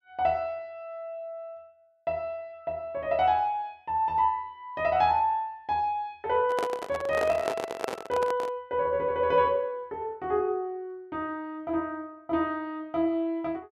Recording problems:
handling noise; from 6.5 to 8.5 s; peak +2 dB vs average level

